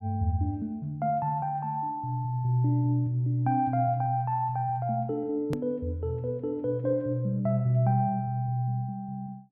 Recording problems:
edit click; at 5.5 s

